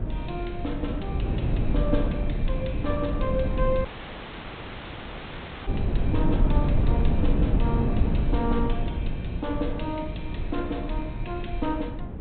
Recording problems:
low-pass filter; nothing above 4 kHz
wind noise; below 140 Hz, SNR -4 dB
dropout; at 4 s for 2 s

